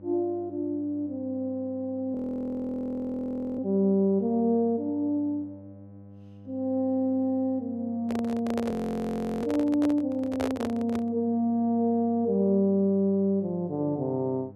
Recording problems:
hum; 50 Hz, harmonics up to 1 kHz, SNR 21 dB
audio freezing; at 2 s for 1.5 s and at 8.5 s for 0.5 s
handling noise; from 8 to 11 s; peak -1 dB vs average level

